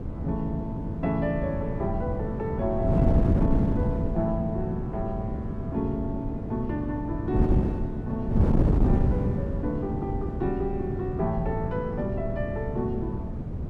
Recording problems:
wind noise; below 220 Hz, SNR -2 dB

